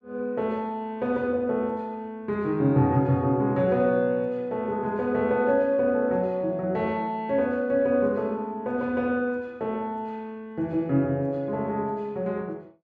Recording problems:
none

